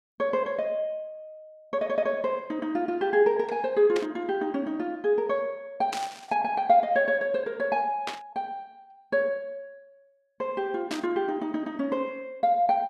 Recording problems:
static burst; 4 times, first at 4 s; peak -2 dB vs average level

